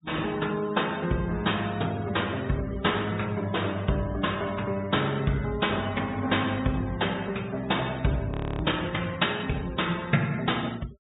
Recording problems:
treble missing; nothing above 4 kHz
noise reduction artefacts; signal-to-artefact ratio 19 dB
frozen audio; at 8.5 s

